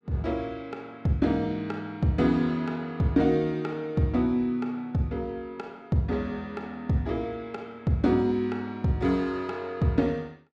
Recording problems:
none

